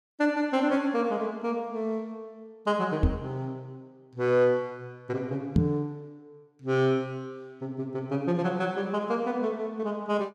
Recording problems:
knock on the microphone; at 3 s and at 5.5 s; peak +8 dB vs average level

